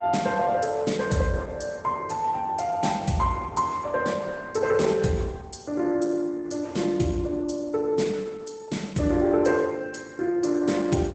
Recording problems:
lossy compression; Opus, log-spectral distance 4 dB, nothing above 8 kHz

